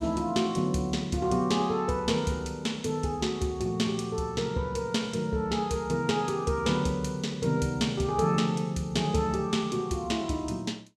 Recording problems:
none

